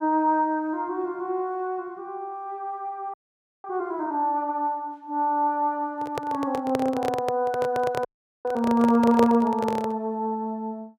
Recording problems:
audio freezing; at 3 s for 0.5 s and at 8 s
microphone handling noise; from 6 to 10 s; peak +2 dB vs average level

